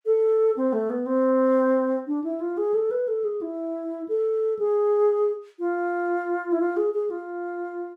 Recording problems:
none

